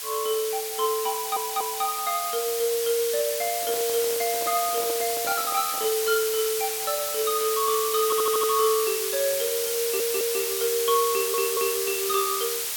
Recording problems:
background hiss; slope +3 dB per octave, SNR 1 dB
audio stuttering; 4 times, first at 1 s
handling noise; from 3.5 to 6 s; peak -7 dB vs average level

